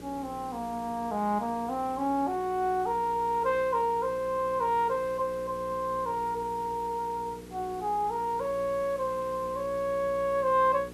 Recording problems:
hum; 60 Hz, harmonics up to 480 Hz, SNR 17 dB
background hiss; slope -3 dB per octave, SNR 22 dB

